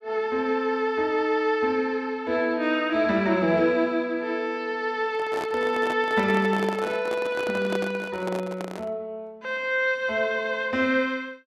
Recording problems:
microphone handling noise; from 5 to 9 s; peak -3 dB vs average level

